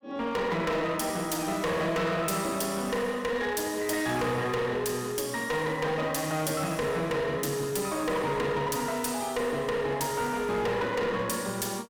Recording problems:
distorted audio; hard clipping, uneven, signal-to-distortion ratio 7 dB

